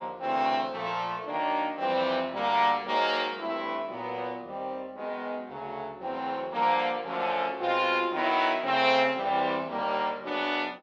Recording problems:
none

